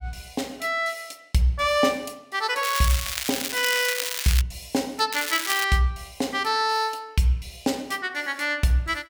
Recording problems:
crackle; from 2.5 to 4.5 s and at 5 s; loose cable, SNR 3 dB

